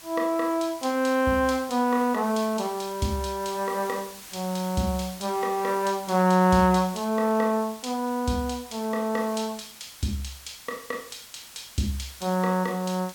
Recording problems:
background hiss; slope +1 dB per octave, SNR 17 dB

